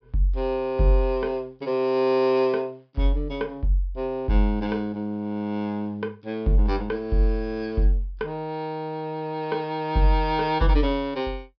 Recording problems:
treble cut off; nothing above 5.5 kHz

